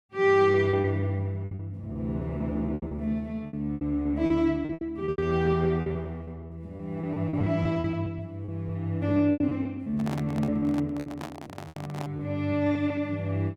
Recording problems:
packet loss; 16% of the sound replaced, filled with repeated pitch periods
microphone handling noise; from 10 to 12 s; peak -6 dB vs average level

